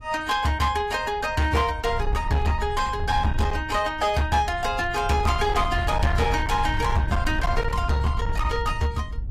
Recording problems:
lossy codec; AAC, log-spectral distance 2 dB, nothing above 15.1 kHz
distortion; hard clipping, signal-to-distortion ratio 11 dB
wind on the microphone; below 92 Hz, SNR 6 dB

